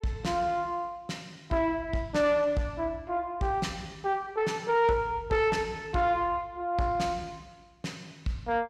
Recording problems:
distortion; soft clipping, signal-to-distortion ratio 11 dB

